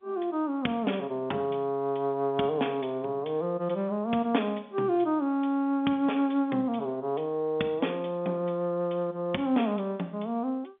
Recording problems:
phone line; 170 Hz to 3.6 kHz, G.711

